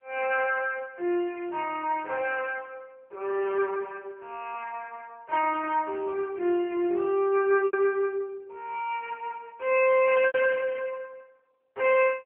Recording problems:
phone line; 300 Hz to 3.1 kHz, AMR-NB
lost packets; 1.4% of the sound replaced, filled with repeated pitch periods

